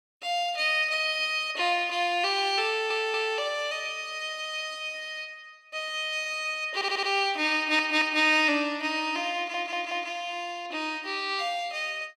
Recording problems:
audio stuttering; 4 times, first at 2.5 s

